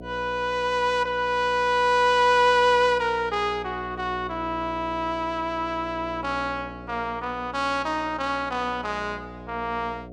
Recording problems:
hum; 60 Hz, harmonics up to 720 Hz, SNR 17 dB

